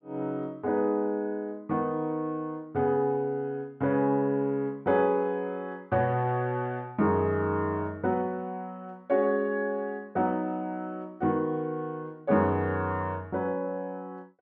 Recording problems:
none

